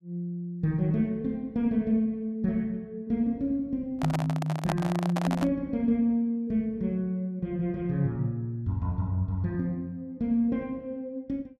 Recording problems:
handling noise; from 4 to 5.5 s; peak +2 dB vs average level

